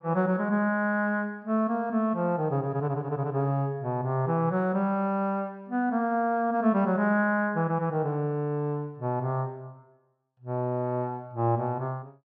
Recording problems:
none

